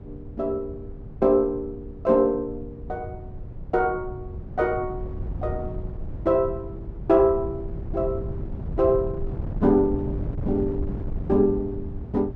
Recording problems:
wind noise; below 140 Hz, SNR 10 dB

